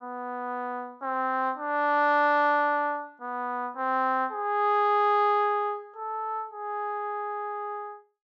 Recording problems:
none

